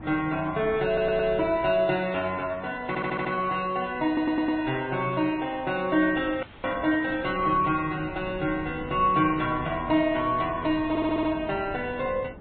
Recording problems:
treble cut off; nothing above 3.9 kHz
lossy codec; MP3, log-spectral distance 3 dB
wind noise; below 410 Hz, SNR 18 dB
stutter; 4 times, first at 1 s
frozen audio; at 6.5 s

